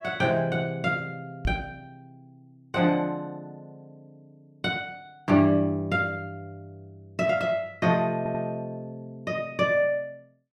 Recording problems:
microphone bump; at 1.5 s; peak +1 dB vs average level
stutter; at 8 s

